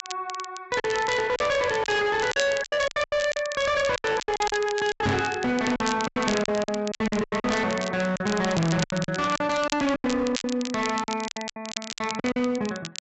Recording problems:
treble cut off; nothing above 7.8 kHz
distorted audio; hard clipping, uneven, signal-to-distortion ratio 7 dB
crackle; vinyl, SNR 11 dB
lost packets; 16% of the sound replaced, filled with silence
microphone bump; at 5 s; peak +5 dB vs average level

